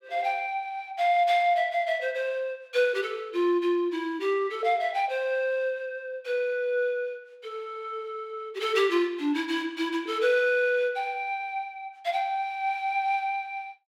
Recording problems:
none

